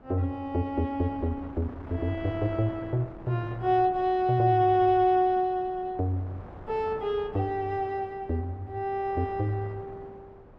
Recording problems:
wind noise; below 720 Hz, SNR 18 dB

